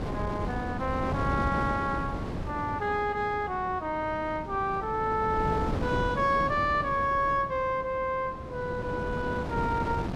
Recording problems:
wind noise; below 450 Hz, SNR 6 dB

